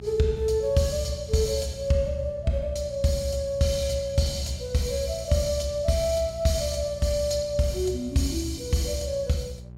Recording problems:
mains hum; 60 Hz, harmonics up to 600 Hz, SNR 16 dB

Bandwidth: 16 kHz